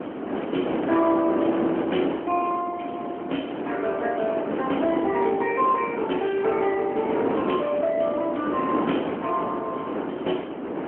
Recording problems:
phone line; 220 Hz to 3.3 kHz, AMR-NB
wind on the microphone; below 680 Hz, SNR 4 dB

